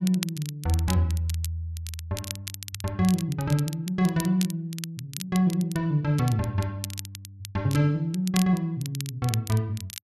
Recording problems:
crackling; vinyl, SNR 12 dB

